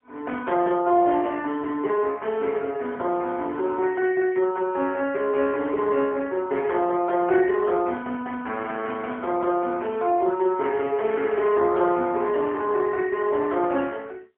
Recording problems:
phone line; 300 Hz to 3.2 kHz, AMR-NB, then MP3

